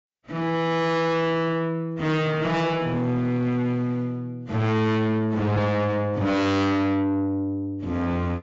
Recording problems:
lossy compression; AAC, log-spectral distance 2 dB
distorted audio; soft clipping, signal-to-distortion ratio 6 dB

